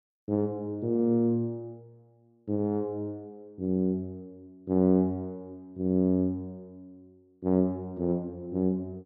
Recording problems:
none

